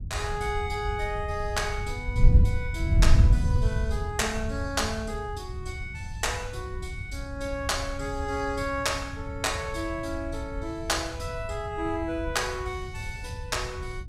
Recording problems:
wind noise; below 96 Hz, SNR 0 dB

